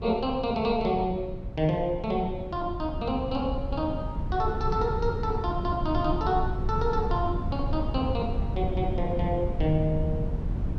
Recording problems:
low-frequency rumble; below 130 Hz, SNR 4 dB

